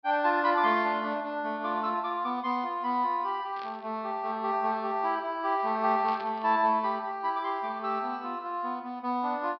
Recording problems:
treble cut off; nothing above 5.5 kHz
static burst; at 3.5 s and at 6 s; peak -12 dB vs average level

